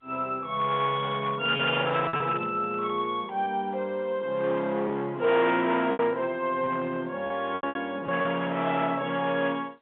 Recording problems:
telephone audio; 300 Hz to 3.7 kHz, G.711
distorted audio; hard clipping, signal-to-distortion ratio 13 dB
lost packets; 4% of the sound replaced, filled with repeated pitch periods

